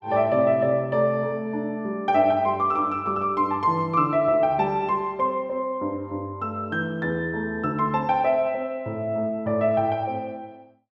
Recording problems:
none

